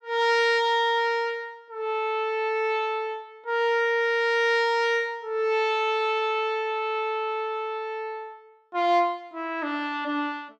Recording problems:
none

